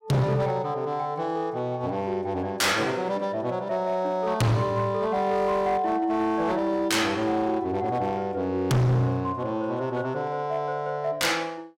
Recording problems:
distortion; hard clipping, signal-to-distortion ratio 7 dB

